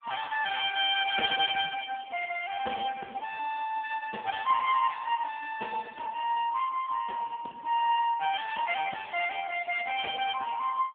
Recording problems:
telephone audio; 390 Hz to 3.5 kHz, AMR-NB

